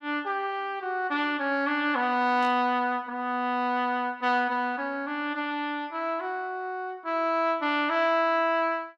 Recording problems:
burst of static; at 2.5 s; peak -14 dB vs average level

